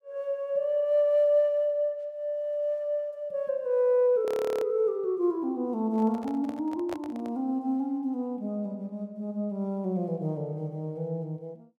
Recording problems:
audio freezing; at 4.5 s
handling noise; from 6 to 7.5 s; peak -5 dB vs average level

